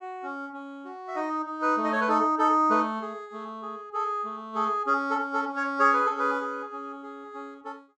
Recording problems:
none

